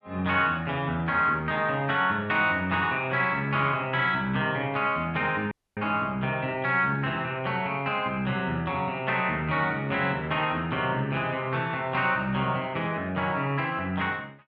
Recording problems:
audio cutting out; at 5.5 s

